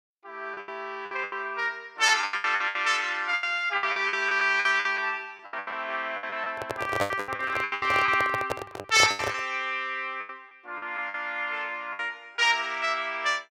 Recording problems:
packet loss; 16% of the sound replaced, filled with the last packet
microphone handling noise; from 6.5 to 9.5 s; peak +3 dB vs average level

